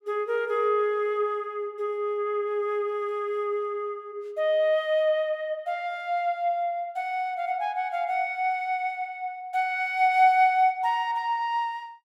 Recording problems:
none

